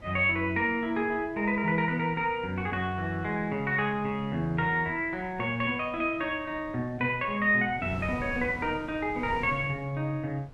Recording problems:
wind on the microphone; below 370 Hz, SNR 18 dB

